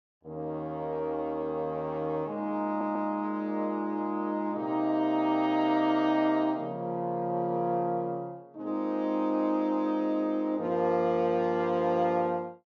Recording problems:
treble missing; nothing above 7.1 kHz
stutter; at 2.5 s

